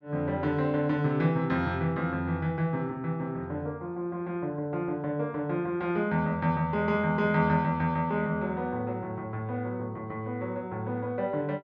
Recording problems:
none

